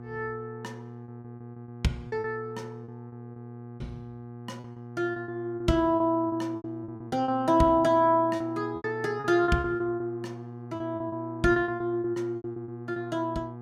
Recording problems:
electrical hum; 60 Hz, harmonics up to 1.2 kHz, SNR 14 dB
lost packets; 13% of the sound replaced, filled with repeated pitch periods

